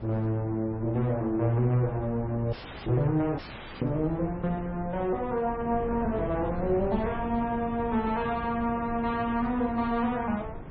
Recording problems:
lossy codec; MP3, log-spectral distance 3 dB, nothing above 4.4 kHz
wind on the microphone; below 340 Hz, SNR 11 dB
dropout; at 2.5 s and at 3.5 s

